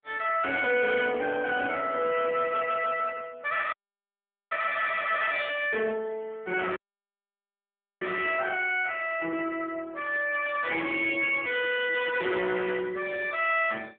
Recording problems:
telephone audio; 280 Hz to 3.4 kHz, AMR-NB
distortion; hard clipping, uneven, signal-to-distortion ratio 10 dB
burst of static; 4 times, first at 2 s; peak -16 dB vs average level
audio cutting out; at 3.5 s for 1 s and at 6.5 s for 1.5 s

